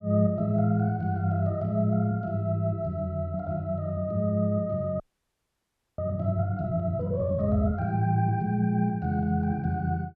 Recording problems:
audio freezing; at 5 s for 1 s

